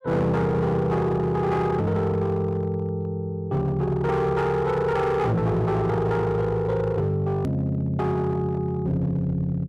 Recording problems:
distorted audio; hard clipping, signal-to-distortion ratio 11 dB
click at an edit; at 7.5 s

